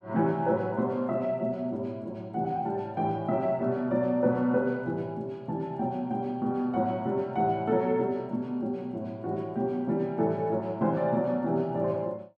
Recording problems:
none

